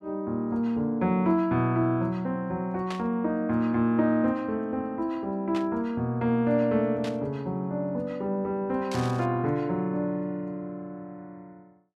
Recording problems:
burst of static; 4 times, first at 3 s; peak -7 dB vs average level

